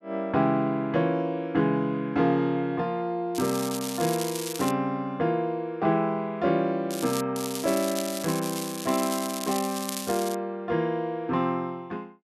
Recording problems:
crackle; from 3.5 to 4.5 s, at 7 s and from 7.5 to 10 s; loose cable, SNR 8 dB

